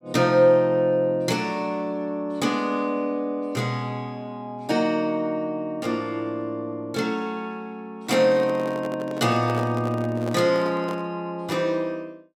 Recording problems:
microphone handling noise; from 8 to 11 s; peak -5 dB vs average level

